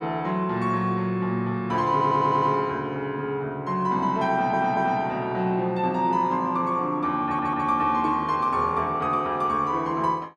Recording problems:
stutter; at 2 s, at 4.5 s and at 7.5 s

